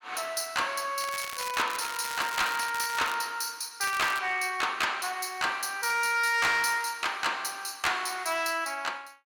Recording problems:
distortion; hard clipping, signal-to-distortion ratio 11 dB
crackle; from 1 to 3 s and at 4 s; loose cable, SNR 10 dB

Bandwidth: 17.5 kHz